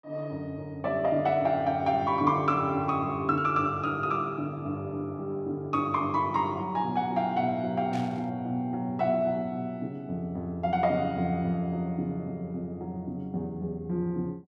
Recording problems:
burst of static; at 8 s; peak -10 dB vs average level

